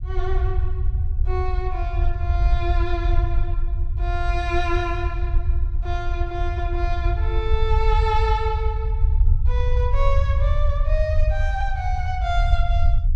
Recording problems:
rumble; below 72 Hz, SNR -5 dB

